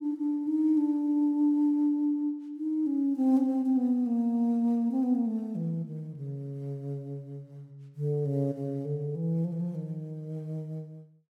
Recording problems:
none

